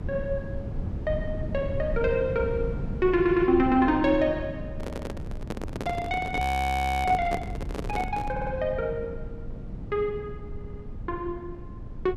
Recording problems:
low-frequency rumble; below 180 Hz, SNR 8 dB
audio stuttering; 4 times, first at 3 s
handling noise; from 4.5 to 8.5 s; peak -1 dB vs average level
frozen audio; at 6.5 s for 0.5 s

